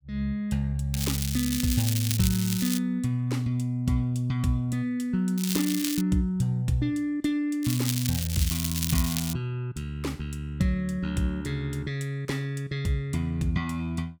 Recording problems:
crackle; from 1 to 3 s, at 5.5 s and from 7.5 to 9.5 s; loose cable, SNR 3 dB

